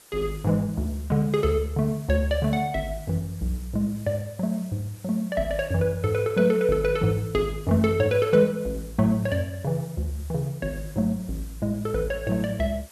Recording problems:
hiss; slope -1 dB per octave, SNR 23 dB

